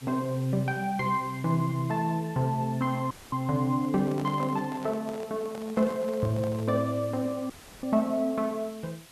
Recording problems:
hiss; slope 0 dB per octave, SNR 22 dB
dropout; at 3 s and at 7.5 s; filled with static
microphone handling noise; from 4 to 7 s; peak -8 dB vs average level

